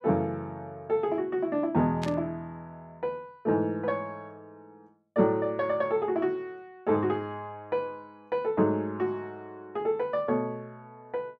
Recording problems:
burst of static; at 2 s; peak -5 dB vs average level

